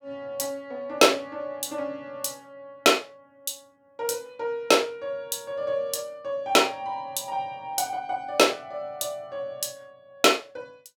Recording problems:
none

